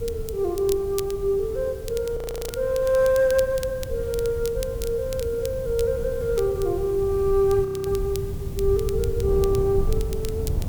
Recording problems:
hiss; slope +1 dB per octave, SNR 23 dB
rumble; below 100 Hz, SNR 9 dB
wind noise; below 340 Hz, SNR 18 dB
crackling; vinyl, SNR 17 dB
frozen audio; at 2 s and at 7.5 s

